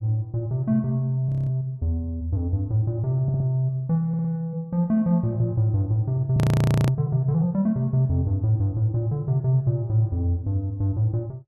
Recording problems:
frozen audio; at 1.5 s and at 6.5 s for 0.5 s
audio stuttering; at 3 s and at 4 s

